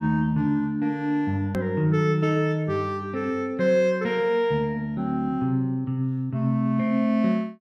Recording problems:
hard cut with a click; at 1.5 s

